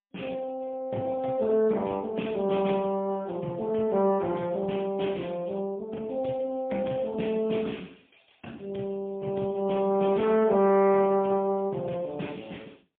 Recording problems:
phone line; 130 Hz to 3.4 kHz, AMR-NB, then MP3

